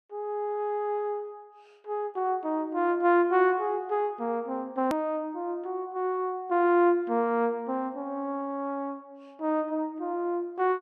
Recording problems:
edit click; at 5 s

